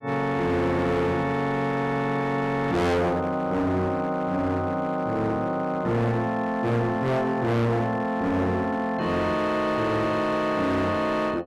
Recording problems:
distortion; hard clipping, signal-to-distortion ratio 6 dB

